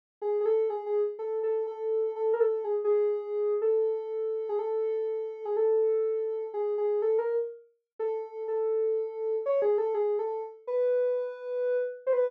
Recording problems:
none

